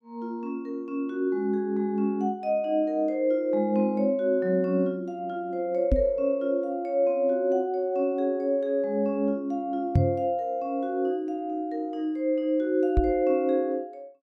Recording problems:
knock on the microphone; at 6 s, at 10 s and at 13 s; peak +8 dB vs average level

